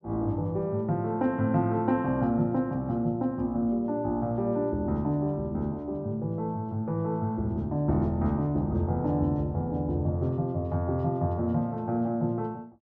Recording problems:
none

